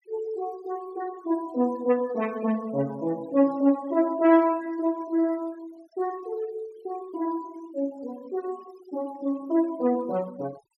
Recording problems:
denoising artefacts; signal-to-artefact ratio 24 dB

